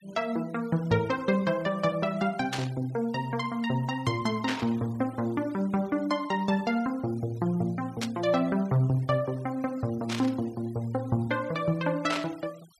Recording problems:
denoising artefacts; signal-to-artefact ratio 24 dB
burst of static; 5 times, first at 2.5 s; peak +1 dB vs average level

